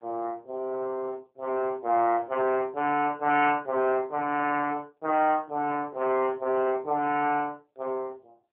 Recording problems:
telephone audio; 170 Hz to 3.1 kHz, AMR-NB

